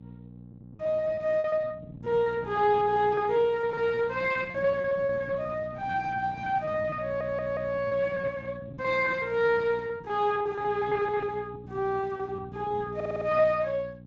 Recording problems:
lossy compression; Speex, log-spectral distance 2 dB
electrical hum; 60 Hz, harmonics up to 540 Hz, SNR 16 dB
lost packets; 17% of the sound replaced, filled with repeated pitch periods
stutter; at 7 s and at 13 s

